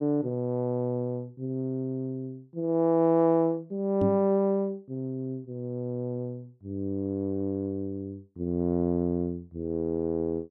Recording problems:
microphone thump; at 4 s; peak +3 dB vs average level

